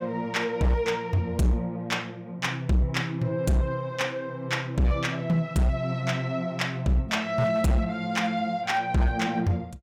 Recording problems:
distorted audio; hard clipping, uneven, signal-to-distortion ratio 11 dB

